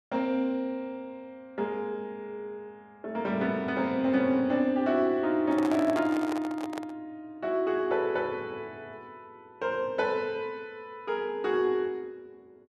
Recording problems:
microphone handling noise; from 5.5 to 7 s; peak -3 dB vs average level

